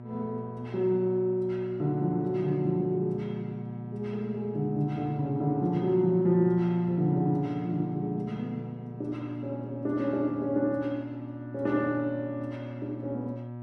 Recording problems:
hum; 60 Hz, harmonics up to 960 Hz, SNR 11 dB

